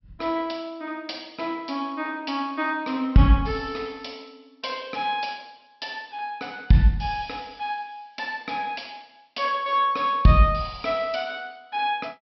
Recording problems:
treble cut off; nothing above 5.6 kHz

